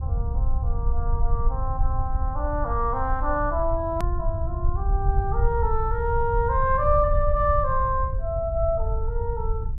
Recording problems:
low-frequency rumble; below 70 Hz, SNR 2 dB
click at an edit; at 4 s

